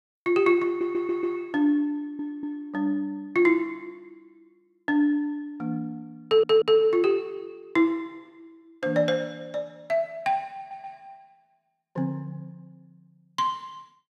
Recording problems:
stutter; 4 times, first at 0.5 s

